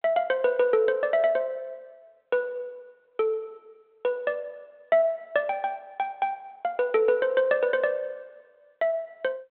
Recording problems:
telephone audio; 220 Hz to 3.9 kHz, G.726

